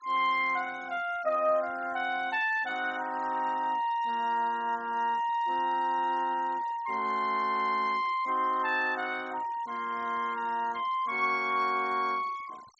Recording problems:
low-pass filter; nothing above 8 kHz
denoising artefacts; signal-to-artefact ratio 22 dB

